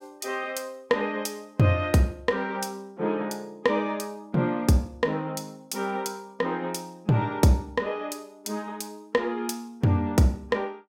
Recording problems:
none

